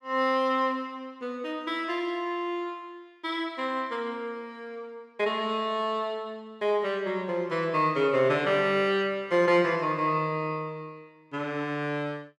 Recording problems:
none

